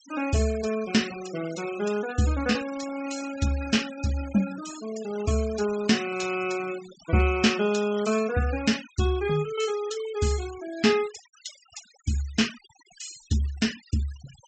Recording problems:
treble cut off; nothing above 8 kHz
noise reduction artefacts; signal-to-artefact ratio 15 dB

